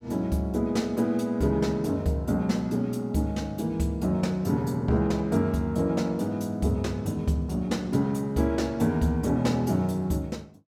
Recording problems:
none

